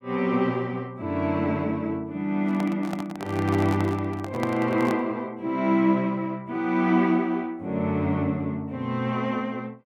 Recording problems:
handling noise; from 2.5 to 5 s; peak -2 dB vs average level

